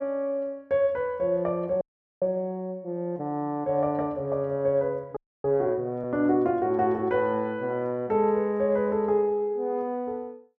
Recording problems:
audio freezing; at 2 s and at 5 s

